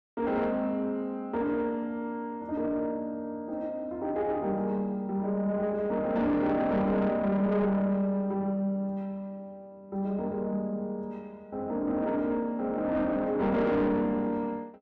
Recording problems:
distorted audio; soft clipping, signal-to-distortion ratio 11 dB

